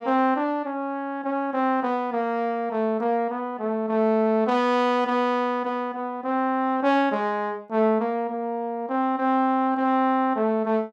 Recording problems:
none

